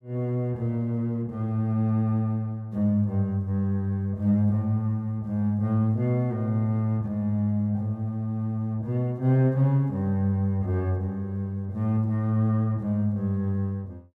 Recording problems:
none

